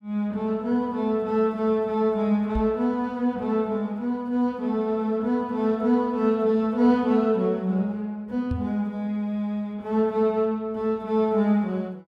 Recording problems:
microphone bump; at 2.5 s and at 8.5 s; peak -1 dB vs average level

